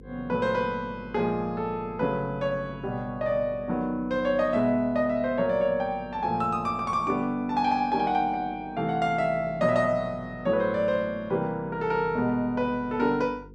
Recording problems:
electrical hum; 50 Hz, harmonics up to 500 Hz, SNR 22 dB

